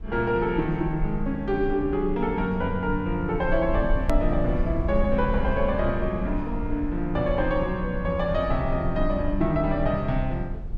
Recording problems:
low-frequency rumble; below 58 Hz, strongest tone 22 Hz, SNR 7 dB
hard cut with a click; at 4 s

